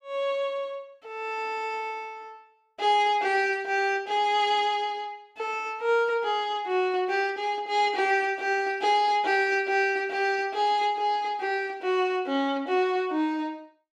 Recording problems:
none

